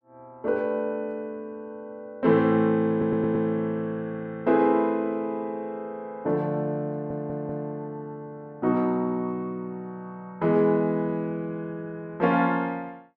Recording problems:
stutter; at 3 s and at 7 s

